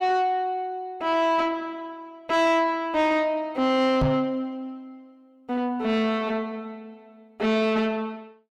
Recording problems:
distorted audio; soft clipping, signal-to-distortion ratio 10 dB
microphone thump; at 4 s; peak +3 dB vs average level

